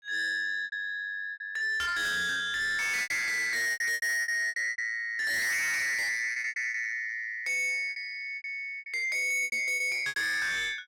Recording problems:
distorted audio; soft clipping, signal-to-distortion ratio 6 dB
packet loss; 12% of the sound replaced, filled with repeated pitch periods

